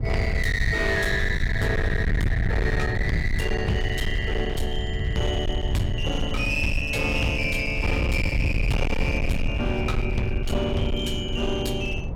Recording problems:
distortion; hard clipping, uneven, signal-to-distortion ratio 6 dB
low-frequency rumble; below 120 Hz, SNR 2 dB
wind noise; below 420 Hz, SNR 17 dB

